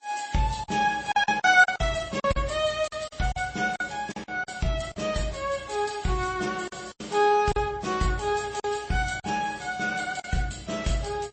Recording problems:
lossy codec; MP3, then MP3, log-spectral distance 6 dB, nothing above 8.2 kHz
lost packets; 8% of the sound replaced, filled with silence

